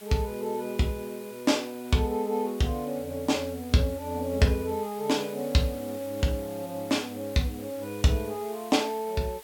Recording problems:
background hiss; slope 0 dB per octave, SNR 18 dB

